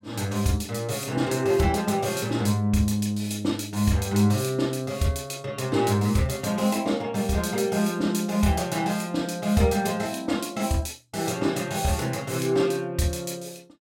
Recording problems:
none

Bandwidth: 16 kHz